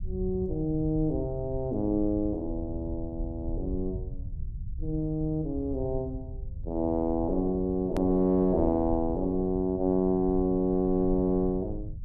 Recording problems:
rumble; below 86 Hz, SNR 11 dB
edit click; at 8 s

